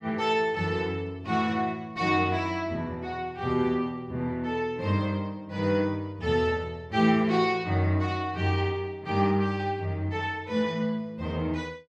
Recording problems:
none

